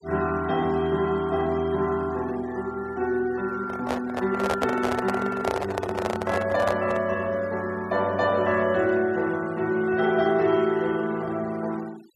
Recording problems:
noise reduction artefacts; signal-to-artefact ratio 21 dB
handling noise; from 3.5 to 7 s; peak +2 dB vs average level

